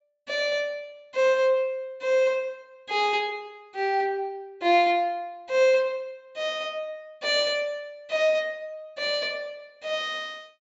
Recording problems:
low-pass filter; nothing above 8 kHz

